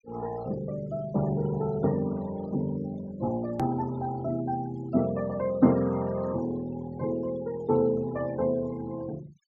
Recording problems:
low-pass filter; nothing above 8 kHz
denoising artefacts; signal-to-artefact ratio 21 dB
click at an edit; at 3.5 s

